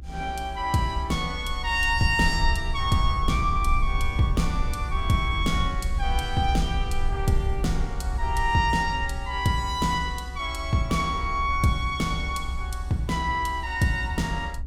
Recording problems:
low-frequency rumble; below 66 Hz, SNR 6 dB

